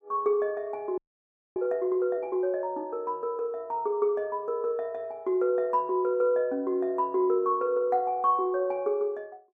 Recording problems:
audio freezing; at 1 s for 0.5 s

